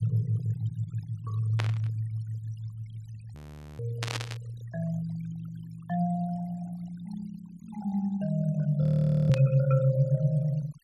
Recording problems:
noise reduction artefacts; signal-to-artefact ratio 21 dB
burst of static; at 1.5 s, at 4 s and at 9.5 s; peak 0 dB vs average level
audio freezing; at 3.5 s and at 9 s

